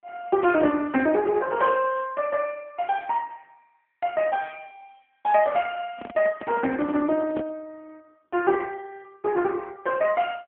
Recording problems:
telephone audio; 110 Hz to 3.2 kHz, AMR-NB
handling noise; from 6 to 7.5 s; peak -9 dB vs average level

